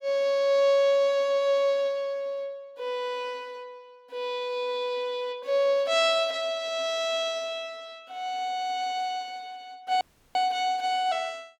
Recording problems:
audio cutting out; at 10 s

